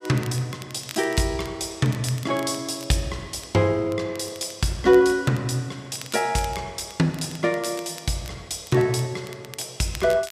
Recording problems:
crackling; vinyl, SNR 19 dB

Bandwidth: 14.5 kHz